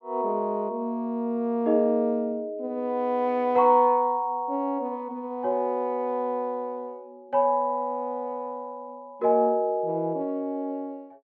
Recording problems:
none

